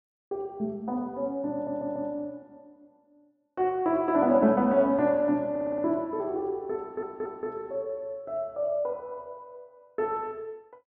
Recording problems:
stutter; at 1.5 s, at 5.5 s and at 7 s

